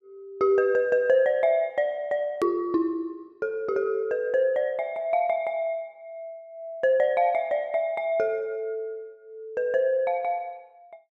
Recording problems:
hard cut with a click; at 2.5 s

